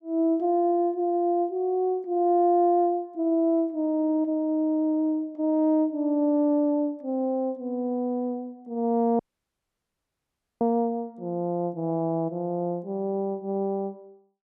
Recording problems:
audio cutting out; at 9 s for 1.5 s

